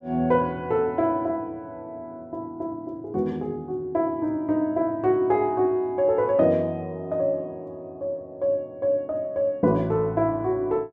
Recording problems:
none

